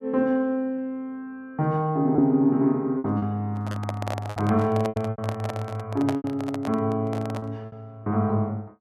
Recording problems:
lost packets; 7% of the sound replaced, filled with repeated pitch periods
microphone handling noise; from 3.5 to 7.5 s; peak -1 dB vs average level

